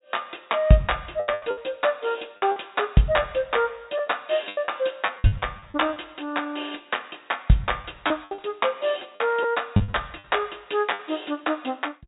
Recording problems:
low-pass filter; nothing above 4 kHz
packet loss; 10% of the sound replaced, filled with the last packet

